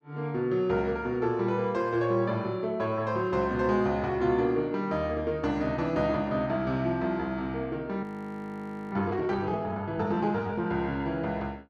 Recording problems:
frozen audio; at 8 s for 1 s

